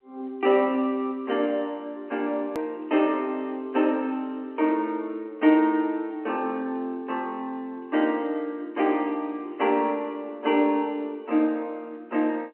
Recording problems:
phone line; 240 Hz to 3.1 kHz, G.711
edit click; at 2.5 s

